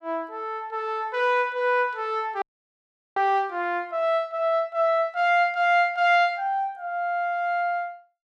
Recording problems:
dropout; at 2.5 s for 0.5 s

